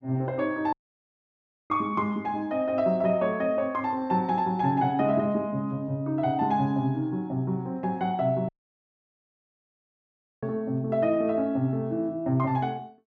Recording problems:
audio cutting out; at 0.5 s for 1 s and at 8.5 s for 2 s

